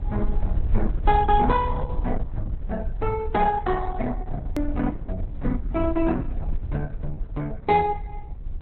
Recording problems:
lossy codec; Opus, log-spectral distance 2 dB
low-frequency rumble; below 58 Hz, SNR 5 dB
edit click; at 4.5 s

